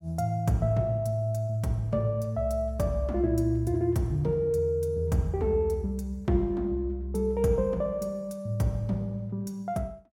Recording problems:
none

